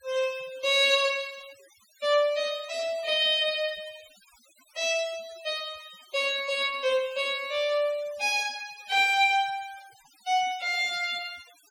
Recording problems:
noise reduction artefacts; signal-to-artefact ratio 22 dB

